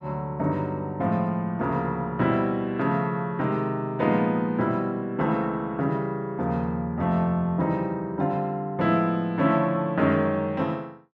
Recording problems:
none

